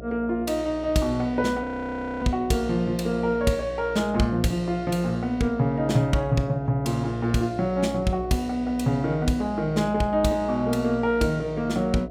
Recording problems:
hum; 60 Hz, harmonics up to 720 Hz, SNR 14 dB
frozen audio; at 1.5 s for 0.5 s

